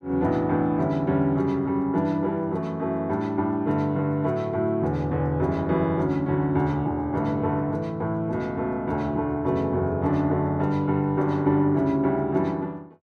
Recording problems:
none

